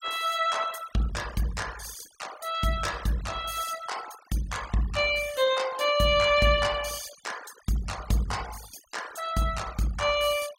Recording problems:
noise reduction artefacts; signal-to-artefact ratio 16 dB

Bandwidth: 16.5 kHz